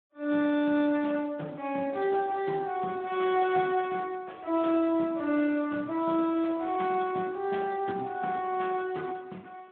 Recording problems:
telephone audio; 190 Hz to 3.6 kHz, Speex

